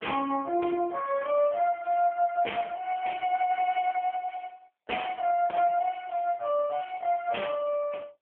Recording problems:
telephone audio; 240 Hz to 3.2 kHz, AMR-NB

